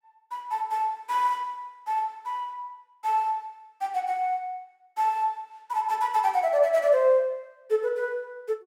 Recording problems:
none

